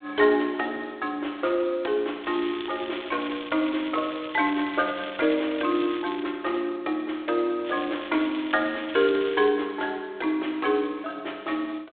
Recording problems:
telephone audio; 260 Hz to 3.7 kHz, G.726
crackling; from 2 to 6 s and from 7.5 to 9.5 s; loose cable, SNR 14 dB

